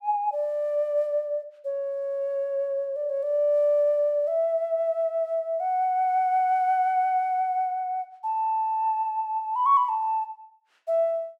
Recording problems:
none

